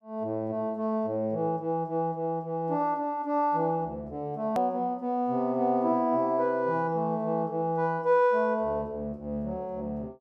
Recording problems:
hard cut with a click; at 4.5 s

